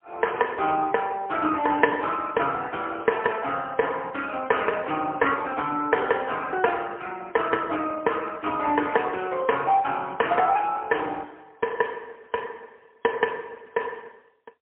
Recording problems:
phone line; 260 Hz to 3 kHz, AMR-NB, then MP3

